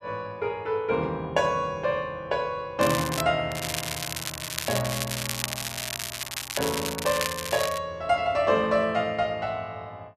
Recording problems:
crackling; at 3 s and from 3.5 to 8 s; loose cable, SNR 4 dB

